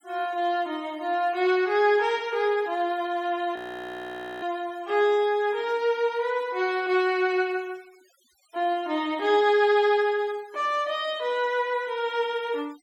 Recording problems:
denoising artefacts; signal-to-artefact ratio 27 dB
audio freezing; at 3.5 s for 1 s

